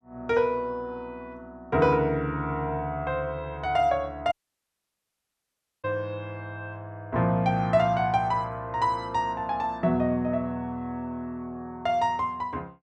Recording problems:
audio cutting out; at 4.5 s for 1.5 s

